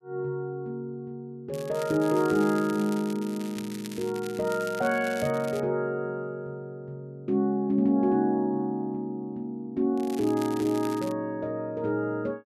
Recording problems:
crackling; from 1.5 to 5.5 s and from 10 to 11 s; loose cable, SNR 17 dB

